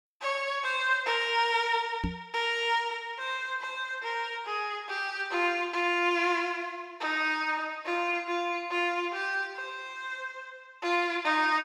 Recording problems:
knock on the microphone; at 2 s; peak +1 dB vs average level

